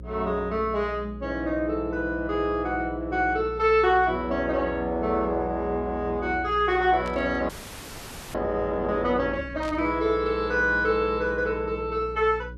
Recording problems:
hum; 60 Hz, harmonics up to 540 Hz, SNR 15 dB
static burst; at 7 s and at 9.5 s; peak -12 dB vs average level
frozen audio; at 7.5 s for 1 s

